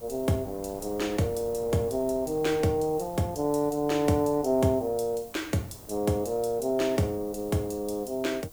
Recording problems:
background hiss; SNR 21 dB
wind noise; below 580 Hz, SNR 21 dB

